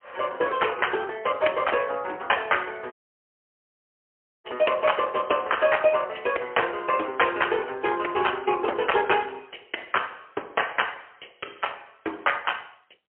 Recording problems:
phone line; 300 Hz to 3.2 kHz, AMR-NB, then MP3
dropout; at 3 s for 1.5 s

